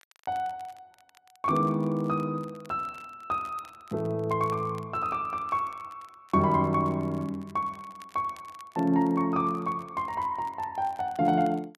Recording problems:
crackle; vinyl, SNR 28 dB

